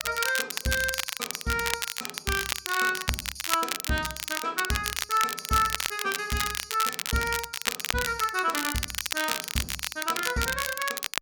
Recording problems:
crackle; vinyl, SNR 2 dB

